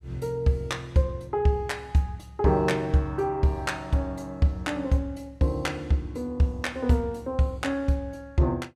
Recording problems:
none

